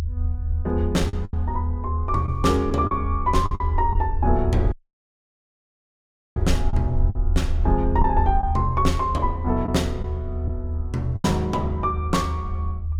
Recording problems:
low-frequency rumble; below 80 Hz, SNR 1 dB
lost packets; 5% of the sound replaced, filled with the last packet
audio cutting out; at 4.5 s for 1.5 s

